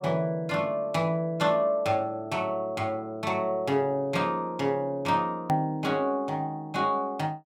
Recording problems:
click at an edit; at 5.5 s

